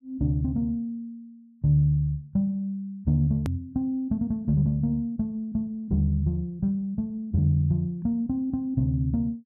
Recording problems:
click at an edit; at 3.5 s

